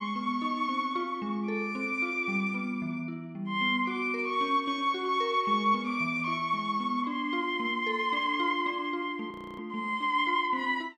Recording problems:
audio freezing; at 9.5 s

